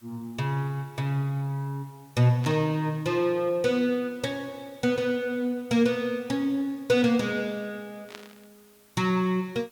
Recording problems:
hiss; slope -1 dB per octave, SNR 30 dB
static burst; at 2.5 s and at 8 s; peak -10 dB vs average level

